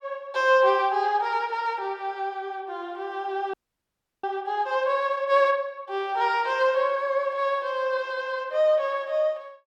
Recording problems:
audio freezing; at 3.5 s for 0.5 s

